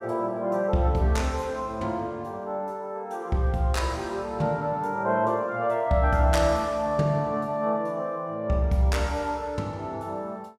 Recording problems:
none

